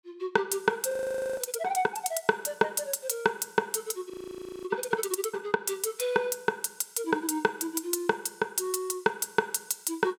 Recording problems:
audio freezing; at 1 s and at 4 s for 0.5 s

